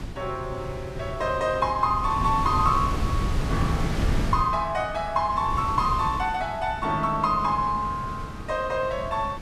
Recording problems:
wind noise; below 230 Hz, SNR 6 dB

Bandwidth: 14 kHz